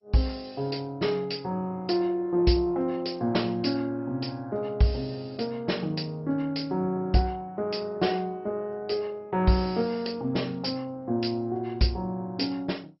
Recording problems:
codec artefacts; MP2, log-spectral distance 4 dB, nothing above 5.5 kHz

